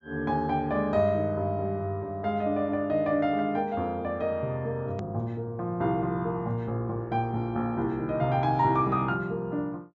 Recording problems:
treble cut off; nothing above 8 kHz
click at an edit; at 5 s

